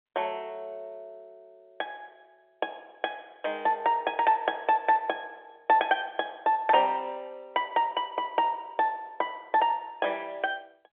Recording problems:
phone line; 280 Hz to 3.5 kHz, G.711

